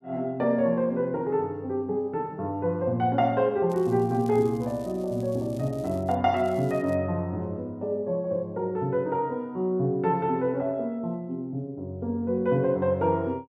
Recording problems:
crackle; from 3.5 to 6 s and at 6.5 s; loose cable, SNR 27 dB

